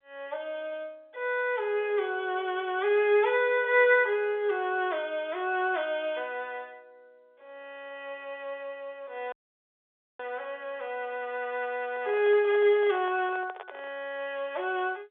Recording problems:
telephone audio; 320 Hz to 3.7 kHz, G.711
audio cutting out; at 9.5 s for 1 s
handling noise; from 12 to 14 s; peak -9 dB vs average level

